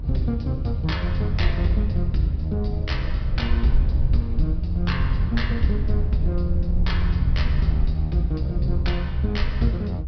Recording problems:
low-pass filter; nothing above 5.5 kHz
low-frequency rumble; below 72 Hz, SNR 0 dB

